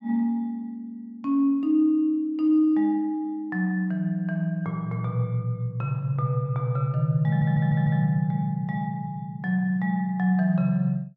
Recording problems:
stutter; at 7.5 s

